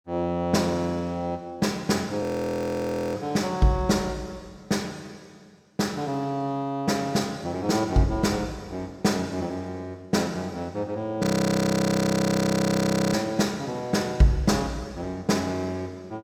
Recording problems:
frozen audio; at 2 s for 1 s and at 11 s for 2 s

